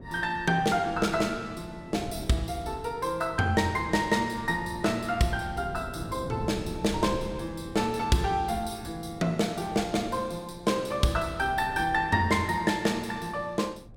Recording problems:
wind on the microphone; below 290 Hz, SNR 15 dB

